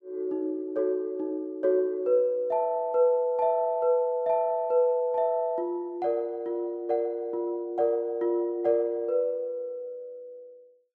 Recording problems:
none

